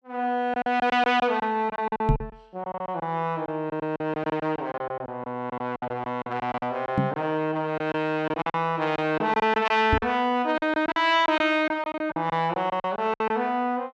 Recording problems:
lost packets; 14% of the sound replaced, filled with silence
microphone bump; at 2 s, at 7 s and at 10 s; peak +7 dB vs average level

